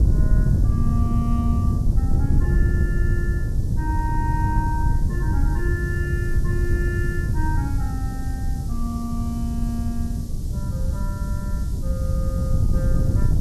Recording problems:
background hiss; SNR 15 dB
wind on the microphone; below 120 Hz, SNR -8 dB

